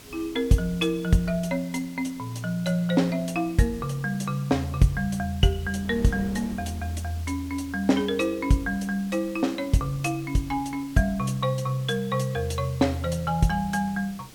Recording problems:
background hiss; slope 0 dB per octave, SNR 21 dB
wind on the microphone; below 390 Hz, SNR 22 dB

